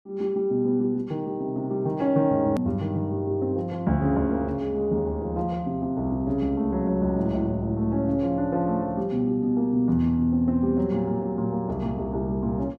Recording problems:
click at an edit; at 2.5 s

